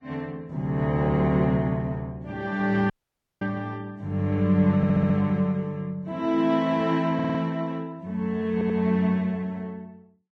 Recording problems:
lossy codec; Vorbis, log-spectral distance 2 dB
dropout; at 3 s for 0.5 s
audio stuttering; at 5 s, at 7 s and at 8.5 s

